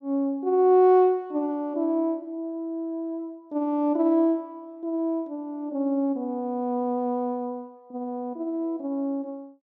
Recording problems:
none

